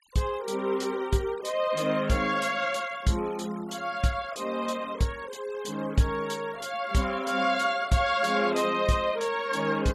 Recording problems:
noise reduction artefacts; signal-to-artefact ratio 21 dB

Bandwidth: 14 kHz